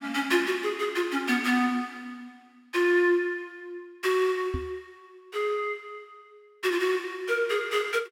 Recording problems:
knock on the microphone; at 4.5 s; peak -2 dB vs average level

